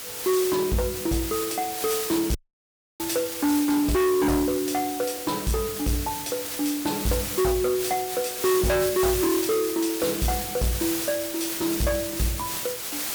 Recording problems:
distortion; soft clipping, signal-to-distortion ratio 6 dB
hiss; slope 0 dB per octave, SNR 5 dB
audio cutting out; at 2.5 s for 0.5 s

